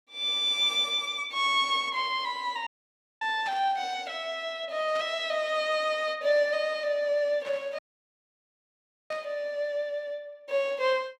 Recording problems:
audio cutting out; at 2.5 s for 0.5 s and at 8 s for 1.5 s
static burst; 4 times, first at 3.5 s; peak -11 dB vs average level

